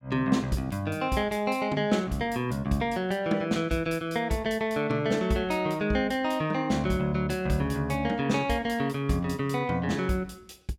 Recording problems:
none

